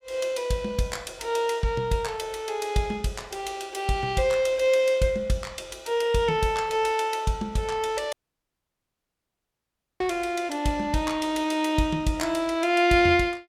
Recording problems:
dropout; at 8 s for 2 s

